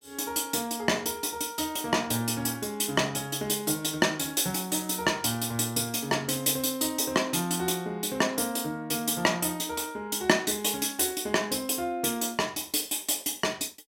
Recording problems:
none

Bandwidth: 16 kHz